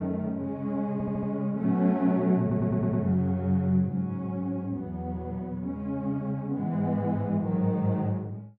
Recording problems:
stutter; at 1 s and at 2.5 s

